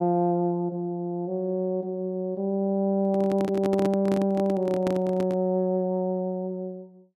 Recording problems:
handling noise; from 3 to 5.5 s; peak -1 dB vs average level

